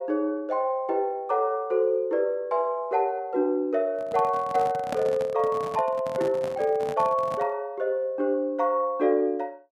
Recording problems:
microphone handling noise; from 4 to 7.5 s; peak -2 dB vs average level

